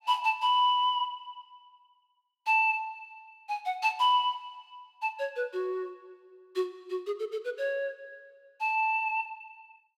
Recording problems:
none

